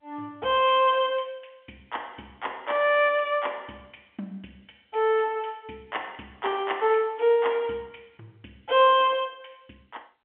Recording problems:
telephone audio; 240 Hz to 3.5 kHz, G.711

